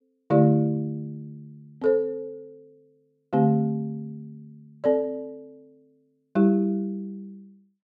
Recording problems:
none

